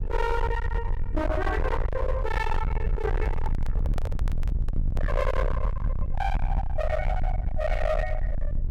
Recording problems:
distorted audio; hard clipping, signal-to-distortion ratio 6 dB
rumble; below 76 Hz, SNR 0 dB
microphone handling noise; from 3 to 5.5 s; peak -3 dB vs average level

